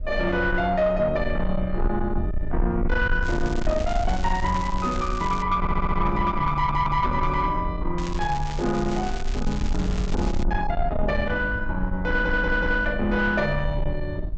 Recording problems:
low-pass filter; nothing above 8 kHz
distortion; soft clipping, signal-to-distortion ratio 11 dB
low-frequency rumble; below 64 Hz, SNR 6 dB
crackling; from 3 to 5.5 s and from 8 to 10 s; loose cable, SNR 15 dB
audio stuttering; at 5.5 s, at 6.5 s and at 12 s

